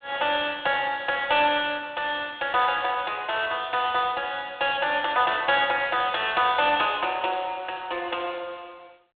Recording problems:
phone line; 300 Hz to 3.6 kHz, G.726

